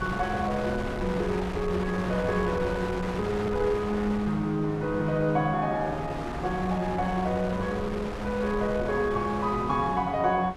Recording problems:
wind on the microphone; below 1.1 kHz, SNR 9 dB

